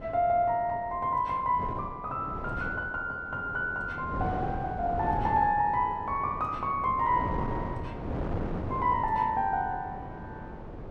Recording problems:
wind on the microphone; below 500 Hz, SNR 9 dB

